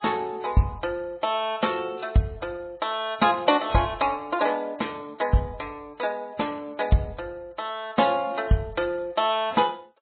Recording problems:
treble cut off; nothing above 3.8 kHz
codec artefacts; MP3, log-spectral distance 4 dB

